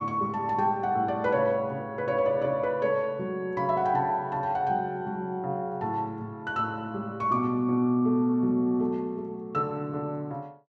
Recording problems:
none

